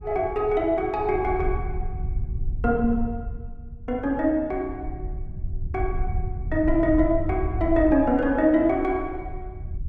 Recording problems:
low-frequency rumble; below 80 Hz, SNR 9 dB

